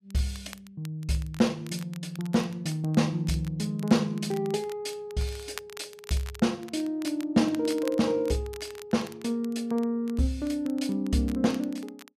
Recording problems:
crackle; vinyl, SNR 20 dB

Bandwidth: 14.5 kHz